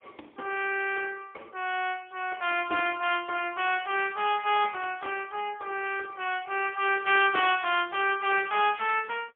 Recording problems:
telephone audio; 280 Hz to 3.3 kHz, AMR-NB, then MP3

